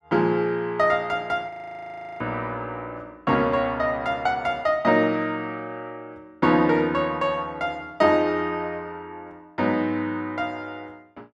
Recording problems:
frozen audio; at 1.5 s for 0.5 s

